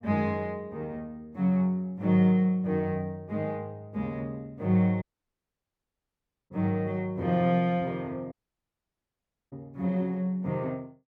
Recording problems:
dropout; at 5 s for 1.5 s and at 8.5 s for 1 s

